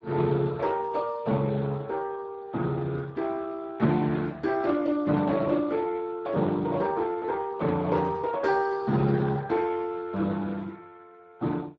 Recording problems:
codec artefacts; Speex, log-spectral distance 3 dB

